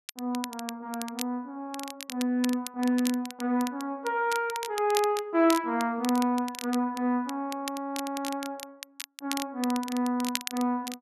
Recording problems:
crackle; vinyl, SNR 10 dB

